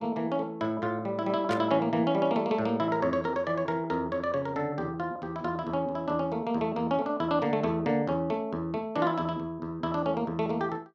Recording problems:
burst of static; at 1.5 s; peak -5 dB vs average level

